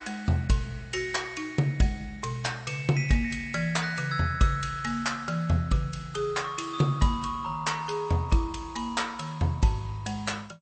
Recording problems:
lossy codec; MP3, then MP2, log-spectral distance 3 dB, nothing above 8.5 kHz

